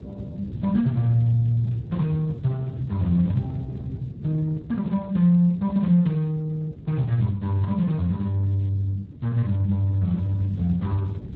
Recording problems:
lossy compression; Speex, log-spectral distance 2 dB, nothing above 13.1 kHz
wind noise; below 200 Hz, SNR 14 dB

